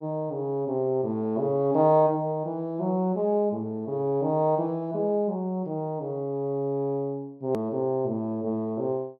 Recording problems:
edit click; at 7.5 s

